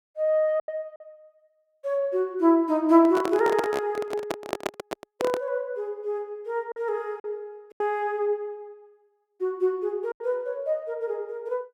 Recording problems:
packet loss; 4% of the sound replaced, filled with silence
microphone handling noise; from 3 to 5.5 s; peak +2 dB vs average level

